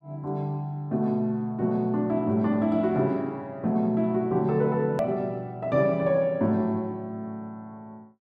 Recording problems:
click at an edit; at 5 s

